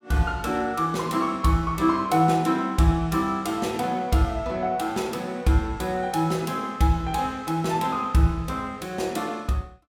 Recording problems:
none

